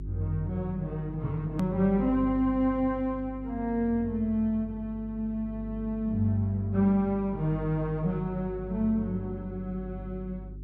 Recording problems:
hum; 50 Hz, harmonics up to 400 Hz, SNR 12 dB
edit click; at 1.5 s

